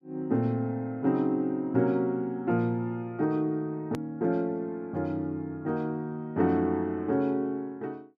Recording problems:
edit click; at 4 s

